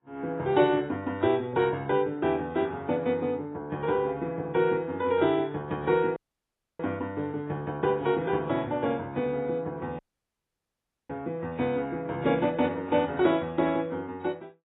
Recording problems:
codec artefacts; AAC, log-spectral distance 2 dB, nothing above 3.4 kHz
audio cutting out; at 6 s for 0.5 s and at 10 s for 1 s

